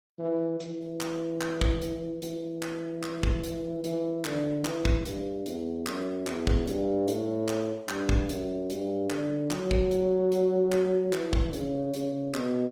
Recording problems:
lossy codec; Opus, log-spectral distance 3 dB, nothing above 19.5 kHz

